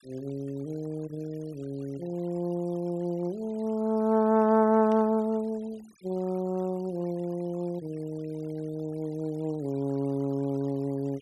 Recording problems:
denoising artefacts; signal-to-artefact ratio 26 dB
static burst; at 5 s; peak -16 dB vs average level

